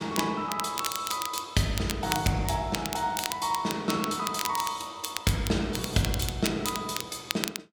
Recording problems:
crackle; vinyl, SNR 6 dB

